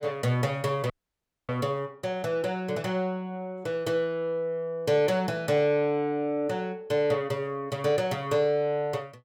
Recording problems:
audio cutting out; at 1 s for 0.5 s

